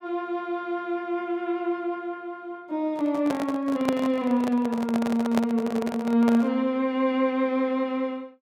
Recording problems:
handling noise; from 3 to 6.5 s; peak +2 dB vs average level

